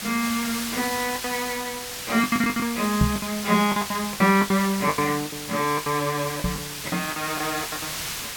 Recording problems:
background hiss; slope +1 dB per octave, SNR 6 dB
packet loss; 14% of the sound replaced, filled with the last packet
knock on the microphone; at 3 s and at 6.5 s; peak +7 dB vs average level

